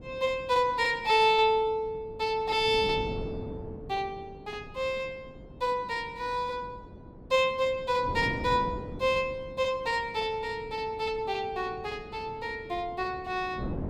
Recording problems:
wind noise; below 350 Hz, SNR 15 dB

